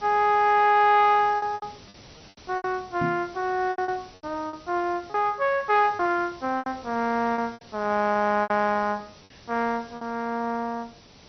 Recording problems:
lossy compression; MP2, log-spectral distance 10 dB, nothing above 5 kHz
background hiss; SNR 23 dB
lost packets; 9% of the sound replaced, filled with repeated pitch periods
microphone thump; at 3 s; peak -2 dB vs average level

